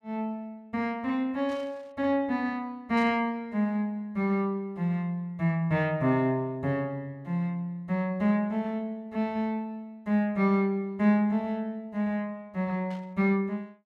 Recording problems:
burst of static; at 1.5 s, at 3 s and at 13 s; peak -16 dB vs average level

